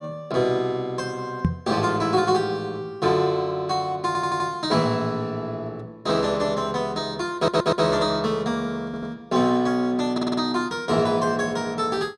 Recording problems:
knock on the microphone; at 1.5 s; peak +6 dB vs average level
stutter; 4 times, first at 4 s

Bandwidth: 14.5 kHz